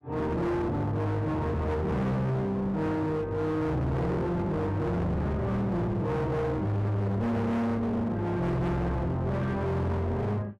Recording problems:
distorted audio; hard clipping, signal-to-distortion ratio 6 dB

